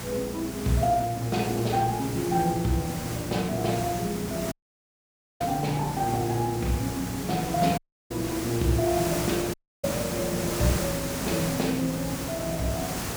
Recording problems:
codec artefacts; Speex, log-spectral distance 3 dB
electrical hum; 60 Hz, harmonics up to 540 Hz, SNR 13 dB
background hiss; slope -4 dB per octave, SNR 6 dB
dropout; at 4.5 s for 1 s, at 8 s and at 9.5 s
crackle; from 7 to 9 s; loose cable, SNR 27 dB

